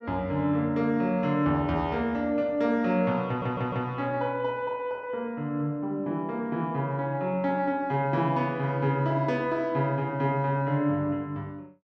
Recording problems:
stutter; at 3.5 s

